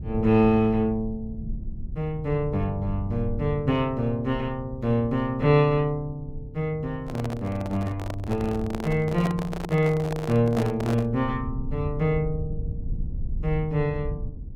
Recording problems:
low-frequency rumble; below 96 Hz, SNR 12 dB
microphone handling noise; from 7 to 11 s; peak -2 dB vs average level

